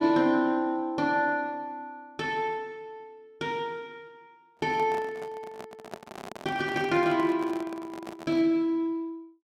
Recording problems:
handling noise; from 4.5 to 8.5 s; peak -6 dB vs average level

